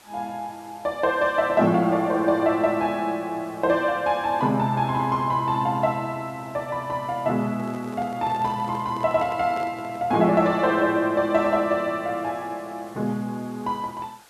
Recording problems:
background hiss; SNR 27 dB
handling noise; from 7.5 to 10 s; peak -10 dB vs average level

